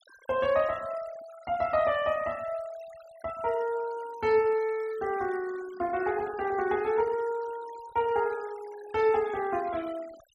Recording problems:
noise reduction artefacts; signal-to-artefact ratio 21 dB

